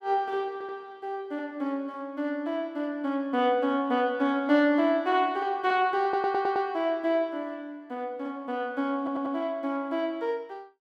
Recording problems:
audio stuttering; at 0.5 s, at 6 s and at 9 s

